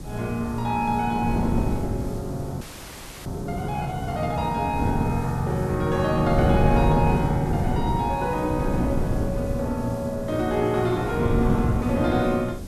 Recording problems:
background hiss; slope +1 dB per octave, SNR 23 dB
wind noise; below 250 Hz, SNR 3 dB
frozen audio; at 2.5 s for 0.5 s

